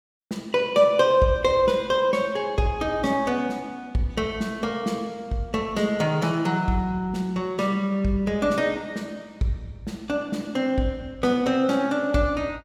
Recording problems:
none

